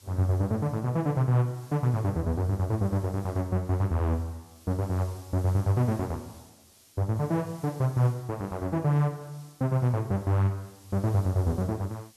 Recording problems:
background hiss; SNR 25 dB

